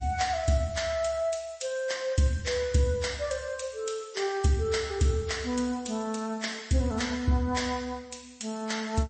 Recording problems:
codec artefacts; MP3, log-spectral distance 4 dB, nothing above 8.2 kHz

